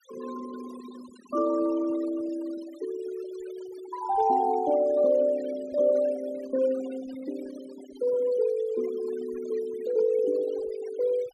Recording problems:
denoising artefacts; signal-to-artefact ratio 18 dB

